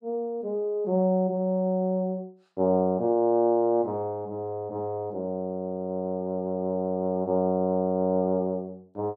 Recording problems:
none

